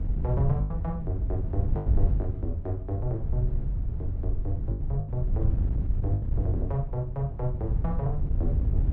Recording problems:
wind on the microphone; below 90 Hz, SNR -3 dB
packet loss; 6% of the sound replaced, filled with the last packet

